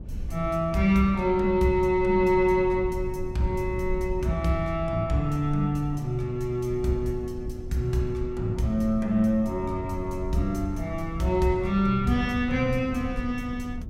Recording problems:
low-frequency rumble; below 110 Hz, SNR 11 dB

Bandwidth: 16 kHz